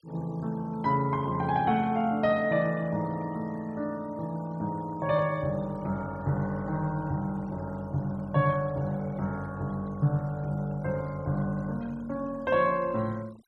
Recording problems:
noise reduction artefacts; signal-to-artefact ratio 25 dB

